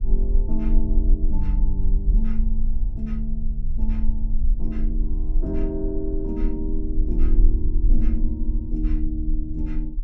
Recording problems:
low-frequency rumble; below 40 Hz, strongest tone 20 Hz, SNR -6 dB

